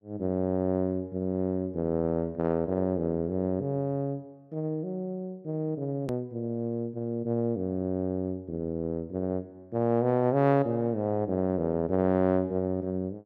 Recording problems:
edit click; at 6 s

